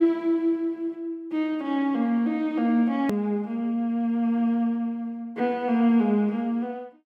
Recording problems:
click at an edit; at 3 s

